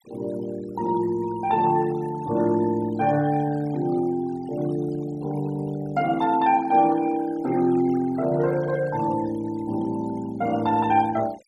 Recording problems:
noise reduction artefacts; signal-to-artefact ratio 18 dB

